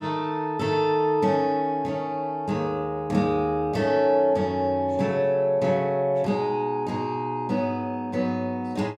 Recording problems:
none

